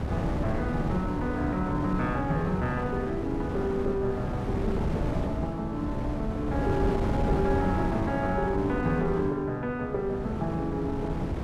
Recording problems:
wind noise; below 360 Hz, SNR 2 dB

